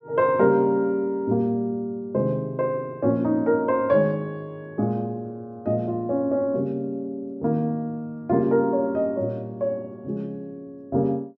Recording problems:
none

